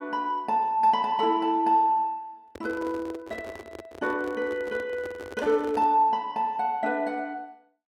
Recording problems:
microphone handling noise; from 2.5 to 6 s; peak -9 dB vs average level

